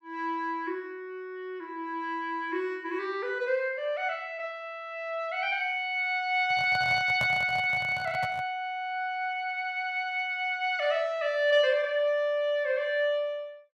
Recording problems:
handling noise; from 6.5 to 8.5 s; peak -2 dB vs average level

